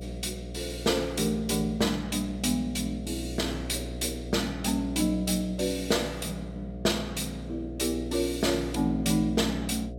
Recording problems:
hum; 60 Hz, harmonics up to 720 Hz, SNR 10 dB

